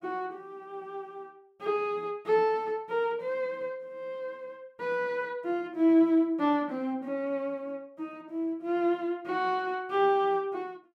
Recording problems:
none

